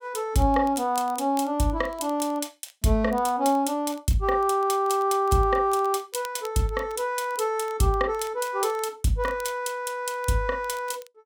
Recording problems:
crackling; vinyl, SNR 25 dB

